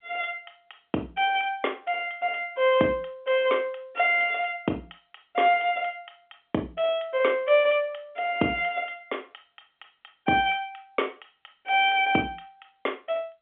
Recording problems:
telephone audio; 280 Hz to 3.4 kHz, G.711

